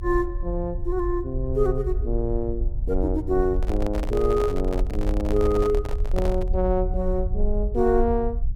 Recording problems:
rumble; below 58 Hz, SNR 4 dB
microphone handling noise; from 3.5 to 6.5 s; peak -3 dB vs average level

